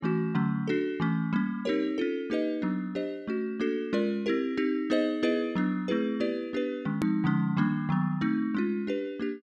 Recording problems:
click at an edit; at 7 s

